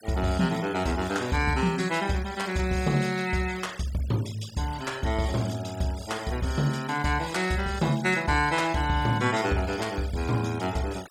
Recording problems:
denoising artefacts; signal-to-artefact ratio 17 dB

